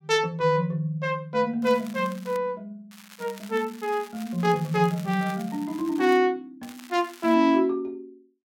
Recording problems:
crackling; at 1.5 s, from 3 to 6 s and at 6.5 s; loose cable, SNR 21 dB

